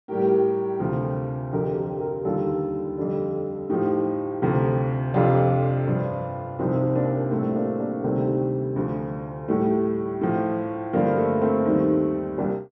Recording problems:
none

